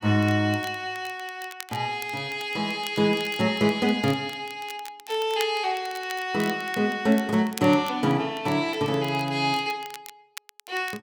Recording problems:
crackle; vinyl, SNR 18 dB

